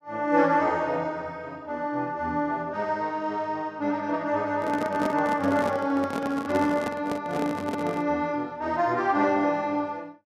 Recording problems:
microphone handling noise; from 4.5 to 8 s; peak -1 dB vs average level

